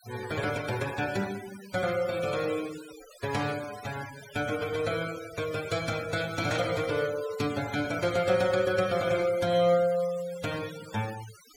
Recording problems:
denoising artefacts; signal-to-artefact ratio 14 dB

